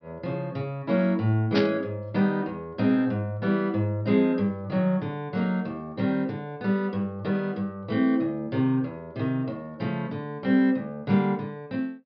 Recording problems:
low-pass filter; nothing above 5.5 kHz
static burst; at 1.5 s; peak 0 dB vs average level

